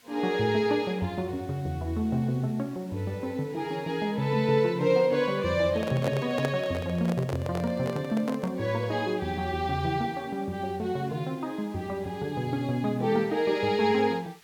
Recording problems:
hiss; slope 0 dB per octave, SNR 28 dB
handling noise; from 5.5 to 8.5 s; peak +1 dB vs average level

